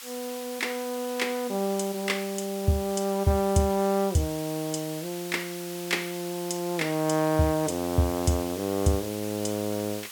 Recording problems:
hiss; SNR 12 dB

